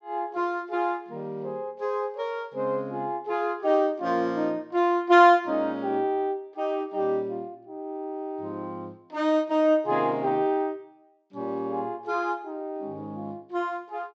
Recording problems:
low-pass filter; nothing above 8 kHz

